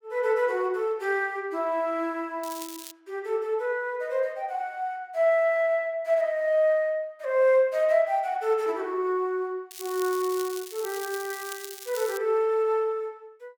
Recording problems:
crackle; at 2.5 s and from 9.5 to 12 s; loose cable, SNR 13 dB

